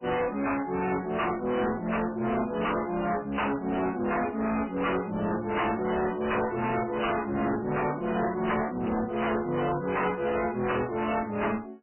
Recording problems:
lossy compression; MP3, log-spectral distance 5 dB, nothing above 3 kHz
distortion; hard clipping, uneven, signal-to-distortion ratio 4 dB

